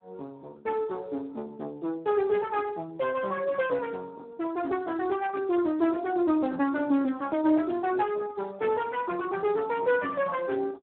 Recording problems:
phone line; 220 Hz to 2.9 kHz, Speex

